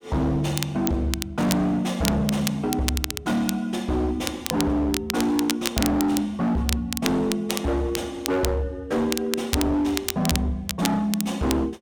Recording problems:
distortion; hard clipping, signal-to-distortion ratio 7 dB
crackling; vinyl, SNR 6 dB

